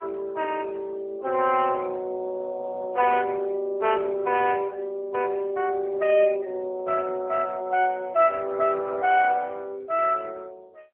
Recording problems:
telephone audio; 300 Hz to 3.1 kHz, AMR-NB

